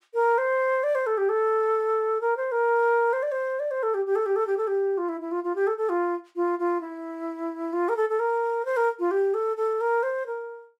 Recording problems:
none

